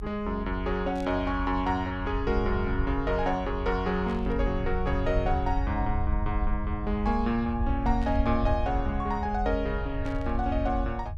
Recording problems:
rumble; below 76 Hz, SNR 4 dB
static burst; 4 times, first at 1 s; peak -14 dB vs average level

